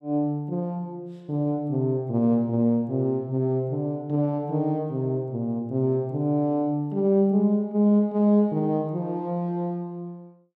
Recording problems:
none

